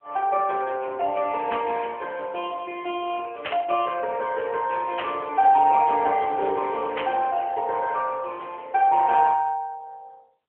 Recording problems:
phone line; 320 Hz to 3.3 kHz, AMR-NB
burst of static; 4 times, first at 1.5 s; peak -2 dB vs average level

